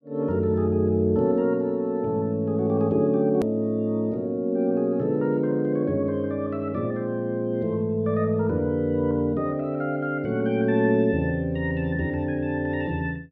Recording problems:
edit click; at 3.5 s

